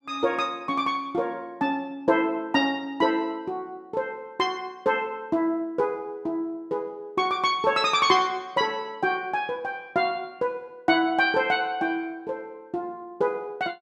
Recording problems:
none

